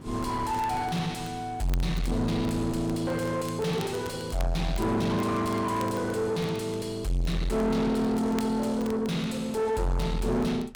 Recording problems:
distorted audio; soft clipping, signal-to-distortion ratio 5 dB
wind on the microphone; below 380 Hz, SNR 15 dB
crackle; vinyl, SNR 22 dB

